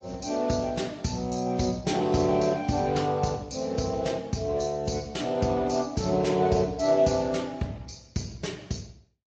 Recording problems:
lossy codec; Speex, then MP3, log-spectral distance 6 dB

